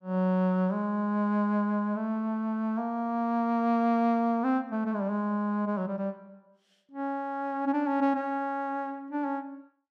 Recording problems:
none

